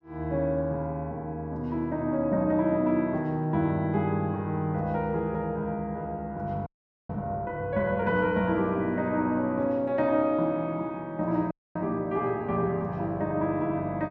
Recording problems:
frozen audio; at 6.5 s and at 12 s

